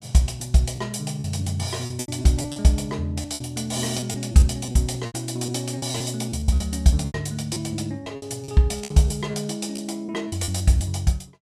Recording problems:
lost packets; 12% of the sound replaced, filled with repeated pitch periods

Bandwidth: 14 kHz